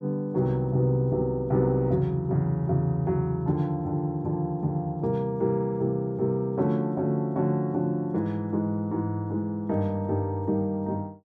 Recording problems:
none

